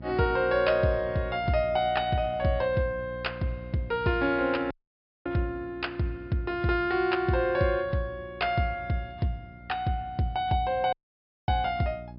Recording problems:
treble missing; nothing above 5.5 kHz
electrical hum; 60 Hz, harmonics up to 660 Hz, SNR 17 dB
dropout; at 4.5 s for 0.5 s and at 11 s for 0.5 s

